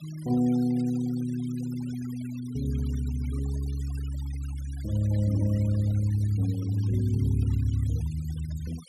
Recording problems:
noise reduction artefacts; signal-to-artefact ratio 22 dB

